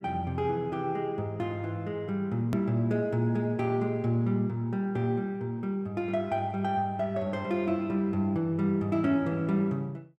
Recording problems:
edit click; at 2.5 s

